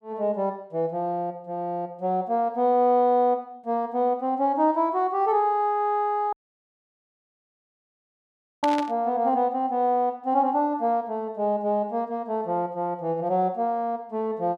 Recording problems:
audio cutting out; at 6.5 s for 2.5 s
burst of static; at 8.5 s; peak -3 dB vs average level

